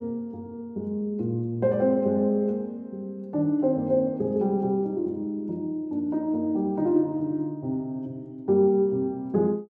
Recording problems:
none

